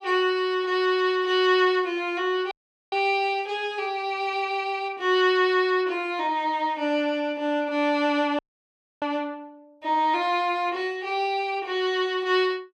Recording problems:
dropout; at 2.5 s and at 8.5 s for 0.5 s

